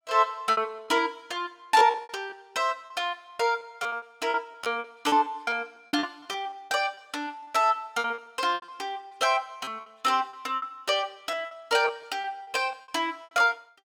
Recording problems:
lost packets; 15% of the sound replaced, filled with repeated pitch periods

